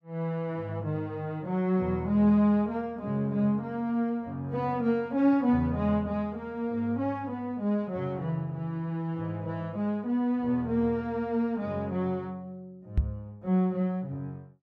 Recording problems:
microphone thump; at 13 s; peak +7 dB vs average level

